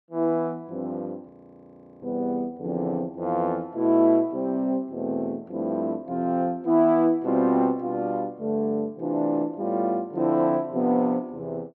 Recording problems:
frozen audio; at 1.5 s for 0.5 s

